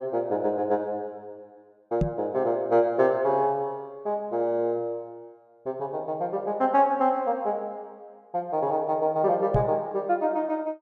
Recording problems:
knock on the microphone; at 2 s and at 9.5 s; peak +4 dB vs average level

